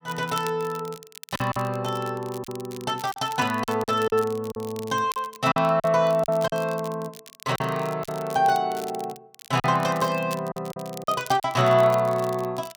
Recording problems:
crackle; vinyl, SNR 18 dB
lost packets; 7% of the sound replaced, filled with silence

